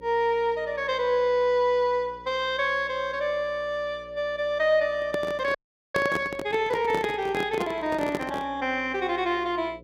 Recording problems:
hum; 60 Hz, harmonics up to 540 Hz, SNR 24 dB
microphone handling noise; from 5 to 8.5 s; peak +1 dB vs average level
audio freezing; at 5.5 s

